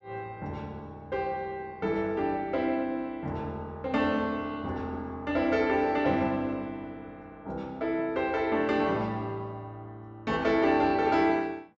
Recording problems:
low-pass filter; nothing above 8 kHz

